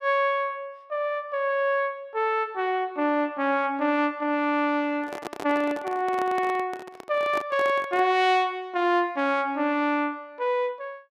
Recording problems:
handling noise; from 5 to 8 s; peak -4 dB vs average level

